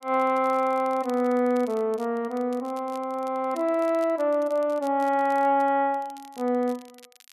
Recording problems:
crackle; vinyl, SNR 27 dB

